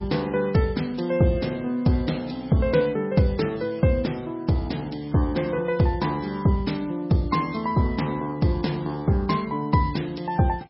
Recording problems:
codec artefacts; MP3, log-spectral distance 3 dB, nothing above 5.5 kHz

